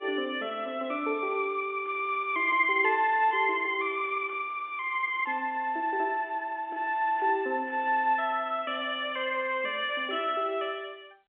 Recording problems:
phone line; 300 Hz to 3.3 kHz, G.711

